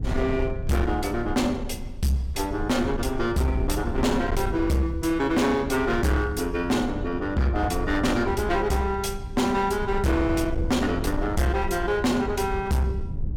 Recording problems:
distortion; hard clipping, uneven, signal-to-distortion ratio 8 dB
rumble; below 100 Hz, SNR 9 dB

